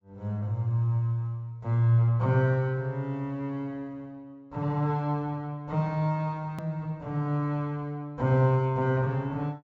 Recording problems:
treble missing; nothing above 8 kHz
edit click; at 6.5 s

